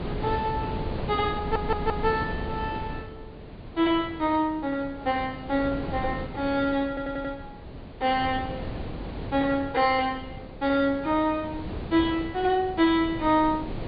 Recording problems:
treble missing; nothing above 4.7 kHz
wind on the microphone; below 440 Hz, SNR 10 dB
stutter; at 1.5 s and at 7 s

